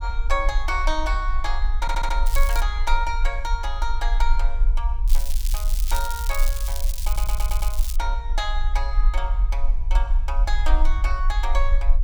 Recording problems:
low-frequency rumble; below 42 Hz, SNR -4 dB
stutter; at 2 s and at 7 s
crackling; at 2.5 s and from 5 to 8 s; loose cable, SNR 5 dB

